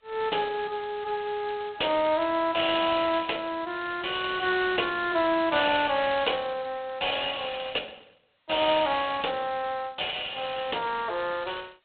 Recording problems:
telephone audio; 300 Hz to 3.7 kHz, G.726

